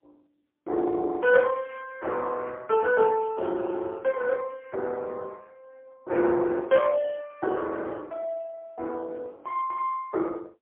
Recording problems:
phone line; 260 Hz to 2.6 kHz, AMR-NB, then MP3

